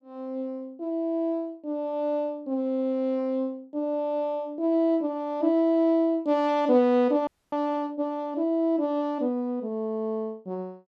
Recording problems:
audio freezing; at 7.5 s

